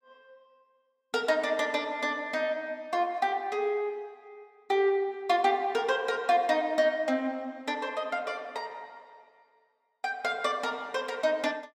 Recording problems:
none

